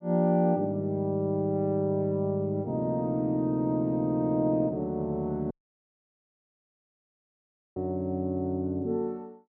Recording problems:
audio cutting out; at 5.5 s for 2.5 s

